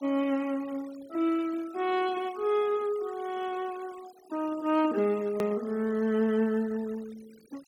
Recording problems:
denoising artefacts; signal-to-artefact ratio 22 dB
edit click; at 5.5 s

